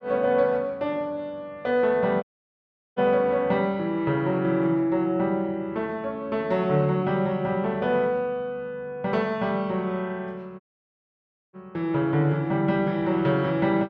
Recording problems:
dropout; at 2 s for 0.5 s and at 11 s for 1 s

